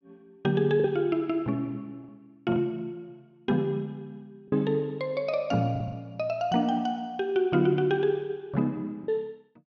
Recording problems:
lost packets; 3% of the sound replaced, filled with the last packet

